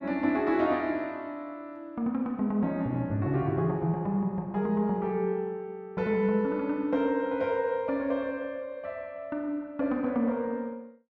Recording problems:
none

